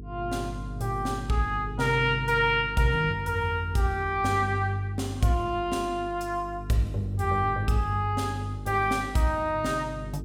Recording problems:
hum; 50 Hz, harmonics up to 450 Hz, SNR 12 dB

